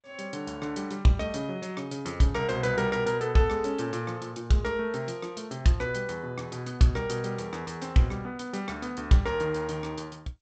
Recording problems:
codec artefacts; G.722, log-spectral distance 3 dB, nothing above 8 kHz

